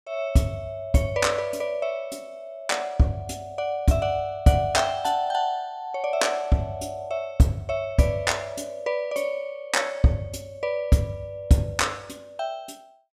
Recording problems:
none

